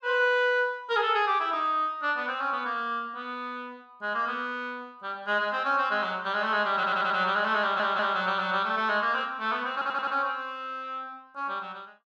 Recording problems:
audio stuttering; at 7 s, at 7.5 s and at 9.5 s

